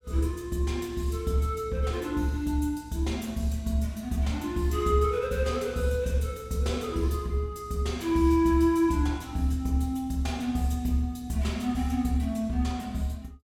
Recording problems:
none

